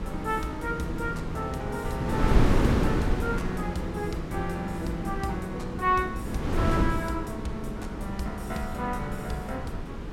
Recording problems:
wind noise; below 330 Hz, SNR -1 dB

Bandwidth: 16 kHz